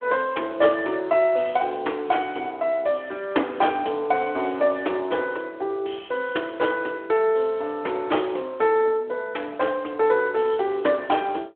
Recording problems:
telephone audio; 260 Hz to 3.7 kHz, Speex

